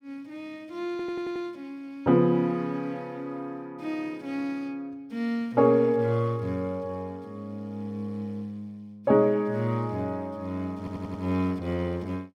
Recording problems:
audio stuttering; at 1 s and at 11 s

